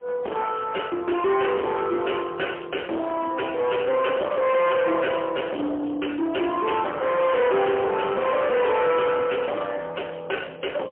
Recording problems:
phone line; 300 Hz to 2.8 kHz, AMR-NB, then MP3
distorted audio; soft clipping, signal-to-distortion ratio 6 dB

